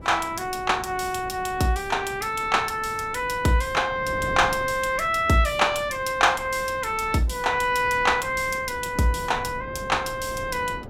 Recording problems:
wind noise; below 370 Hz, SNR 17 dB

